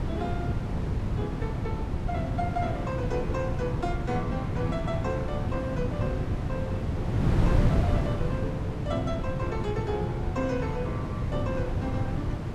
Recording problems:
wind on the microphone; below 210 Hz, SNR -4 dB

